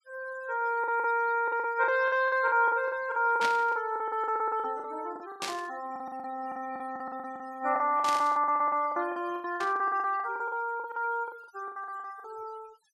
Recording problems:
noise reduction artefacts; signal-to-artefact ratio 21 dB
packet loss; 19% of the sound replaced, filled with the last packet
static burst; 4 times, first at 3.5 s; peak 0 dB vs average level

